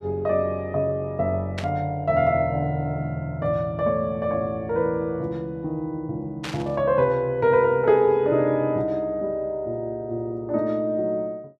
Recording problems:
burst of static; at 1.5 s and at 6.5 s; peak -5 dB vs average level

